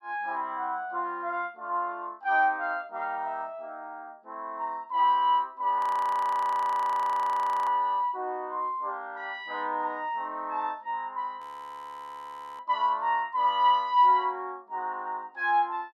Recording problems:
frozen audio; at 6 s for 2 s and at 11 s for 1 s

